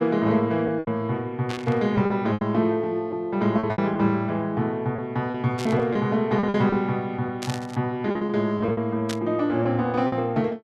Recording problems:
lost packets; 8% of the sound replaced, filled with repeated pitch periods
burst of static; 4 times, first at 1.5 s; peak -4 dB vs average level

